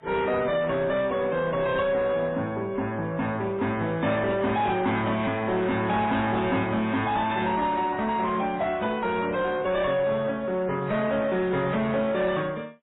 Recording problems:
codec artefacts; AAC, then MP3, log-spectral distance 3 dB, nothing above 3.8 kHz
distorted audio; soft clipping, signal-to-distortion ratio 9 dB

